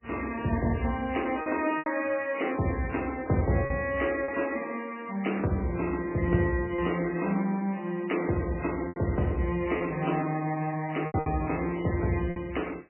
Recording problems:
lossy compression; MP3, log-spectral distance 7 dB, nothing above 2.5 kHz
lost packets; 4% of the sound replaced, filled with repeated pitch periods

